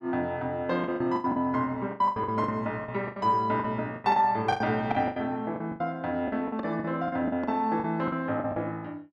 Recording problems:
lost packets; 16% of the sound replaced, filled with the last packet

